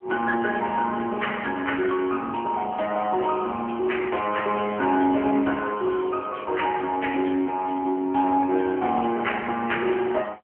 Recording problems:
telephone audio; 240 Hz to 3.1 kHz, AMR-NB

